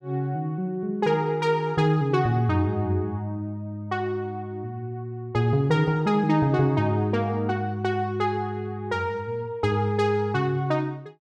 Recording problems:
none

